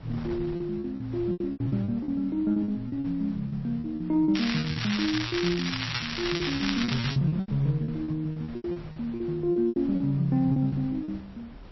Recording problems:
lossy compression; MP3, log-spectral distance 4 dB, nothing above 13.1 kHz
wind on the microphone; below 460 Hz, SNR 18 dB
packet loss; 16% of the sound replaced, filled with repeated pitch periods
crackle; from 4.5 to 7 s; loose cable, SNR 3 dB

